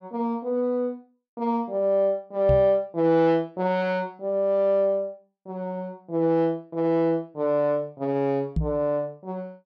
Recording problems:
knock on the microphone; at 2.5 s and at 8.5 s; peak +2 dB vs average level

